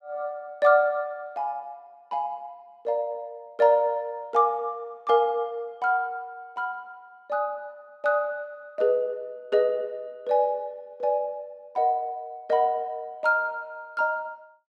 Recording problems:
none

